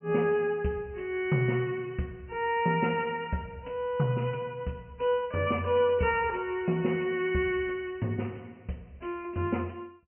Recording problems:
low-pass filter; nothing above 3 kHz

